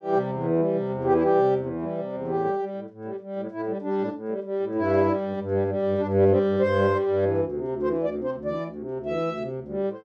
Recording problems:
none

